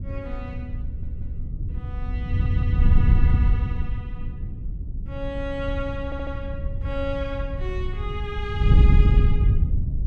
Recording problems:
wind noise; below 96 Hz, SNR -9 dB
stutter; at 1 s, at 2.5 s and at 6 s

